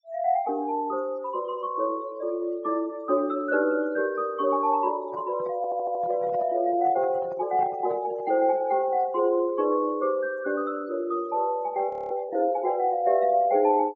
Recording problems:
treble missing; nothing above 8 kHz
noise reduction artefacts; signal-to-artefact ratio 26 dB
handling noise; from 5 to 8.5 s; peak -12 dB vs average level
stutter; at 5.5 s
frozen audio; at 12 s

